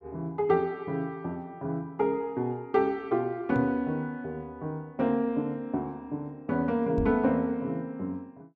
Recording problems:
microphone bump; at 3.5 s and at 7 s; peak 0 dB vs average level

